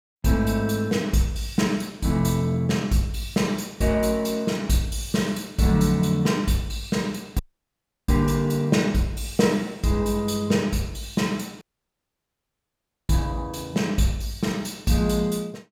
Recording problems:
audio cutting out; at 7.5 s for 0.5 s and at 12 s for 1.5 s

